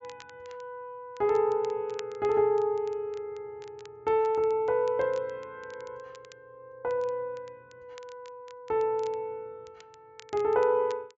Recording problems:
treble missing; nothing above 8 kHz
crackle; vinyl, SNR 27 dB

